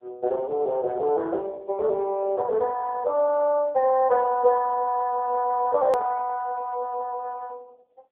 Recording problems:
phone line; 300 Hz to 3.9 kHz, AMR-NB
click at an edit; at 6 s

